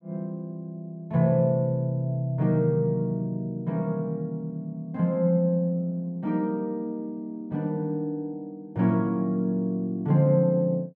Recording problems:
none

